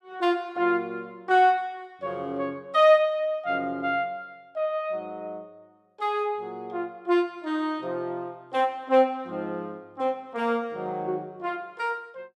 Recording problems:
none

